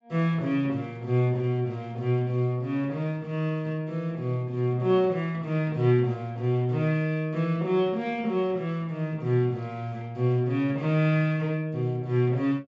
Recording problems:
treble missing; nothing above 7.7 kHz

